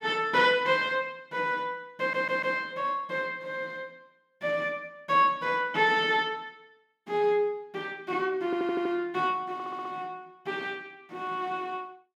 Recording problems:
audio stuttering; at 2 s, at 8.5 s and at 9.5 s

